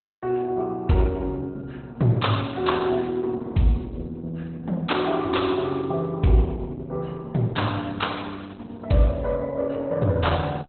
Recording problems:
codec artefacts; Opus, log-spectral distance 4 dB, nothing above 4 kHz

